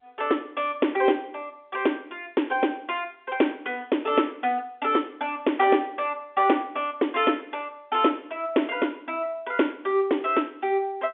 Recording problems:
telephone audio; 190 Hz to 3.5 kHz, G.711

